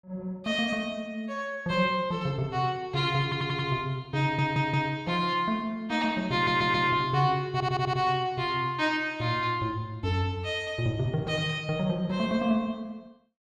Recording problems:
stutter; 4 times, first at 3 s

